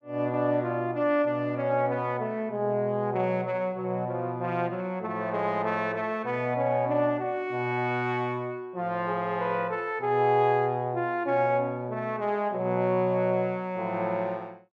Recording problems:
none

